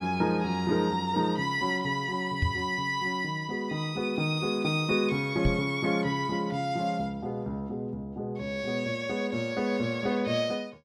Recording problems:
microphone thump; at 2.5 s and at 5.5 s; peak +5 dB vs average level

